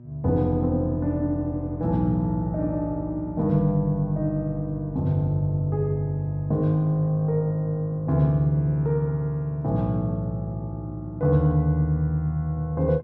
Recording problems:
electrical hum; 60 Hz, harmonics up to 600 Hz, SNR 23 dB

